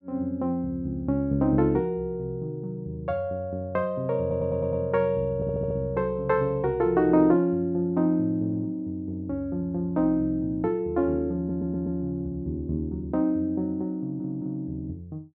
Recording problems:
audio stuttering; 4 times, first at 4 s

